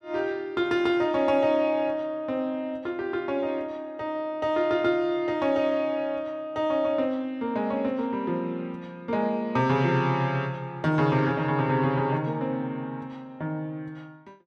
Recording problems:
none

